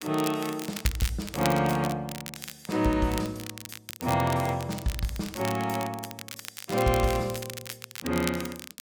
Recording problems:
crackling; vinyl, SNR 10 dB

